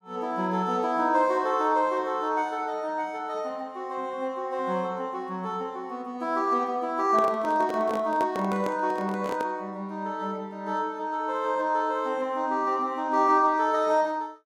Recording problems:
handling noise; from 7 to 9.5 s; peak -3 dB vs average level

